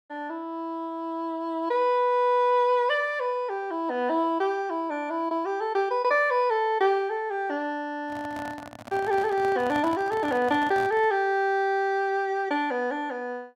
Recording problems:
handling noise; from 8 to 11 s; peak -7 dB vs average level

